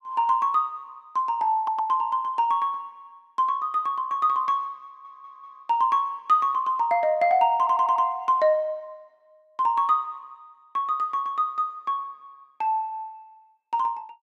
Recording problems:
audio stuttering; at 1.5 s, at 5 s and at 7.5 s

